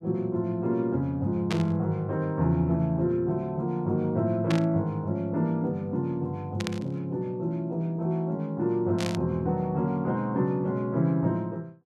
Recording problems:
static burst; 4 times, first at 1.5 s; peak -1 dB vs average level

